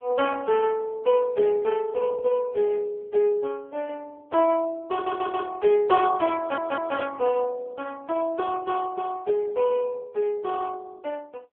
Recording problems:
phone line; 340 Hz to 3.3 kHz, AMR-NB
audio stuttering; at 5 s and at 6.5 s
burst of static; at 7.5 s; peak -12 dB vs average level

